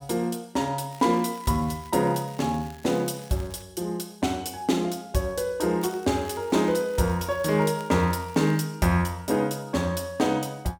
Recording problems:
crackling; from 1 to 3.5 s and from 6 to 8.5 s; loose cable, SNR 24 dB

